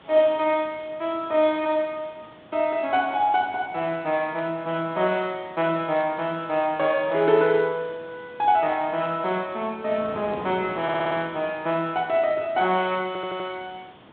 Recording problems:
phone line; 110 Hz to 3.7 kHz, G.726
background hiss; SNR 30 dB
wind on the microphone; below 1 kHz, SNR 21 dB
stutter; at 11 s and at 13 s

